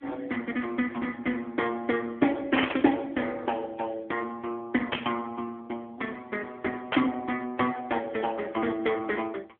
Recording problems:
telephone audio; 280 Hz to 3.5 kHz, AMR-NB
burst of static; at 2.5 s, at 5 s and at 7 s; peak +7 dB vs average level

